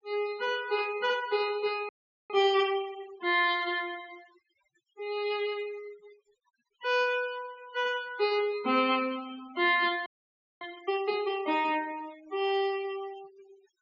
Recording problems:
treble missing; nothing above 7.3 kHz
noise reduction artefacts; signal-to-artefact ratio 22 dB
audio freezing; at 2 s and at 10 s for 0.5 s

